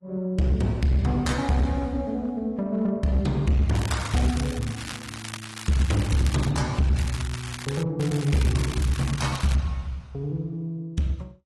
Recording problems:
lossy codec; AAC, log-spectral distance 4 dB, nothing above 11.6 kHz
distortion; hard clipping, uneven, signal-to-distortion ratio 9 dB
crackling; from 4 to 6.5 s, at 7 s and from 8 to 9.5 s; loose cable, SNR 12 dB

